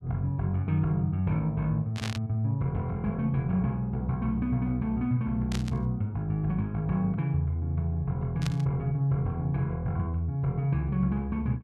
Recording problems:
static burst; at 2 s, at 5.5 s and at 8.5 s; peak -2 dB vs average level

